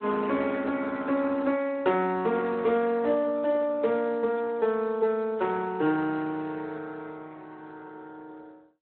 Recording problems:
phone line; 220 Hz to 3.6 kHz, Speex

